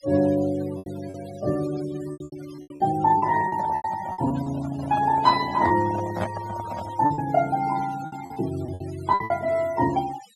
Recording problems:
noise reduction artefacts; signal-to-artefact ratio 17 dB
lost packets; 11% of the sound replaced, filled with repeated pitch periods
microphone handling noise; from 3 to 7 s; peak +1 dB vs average level

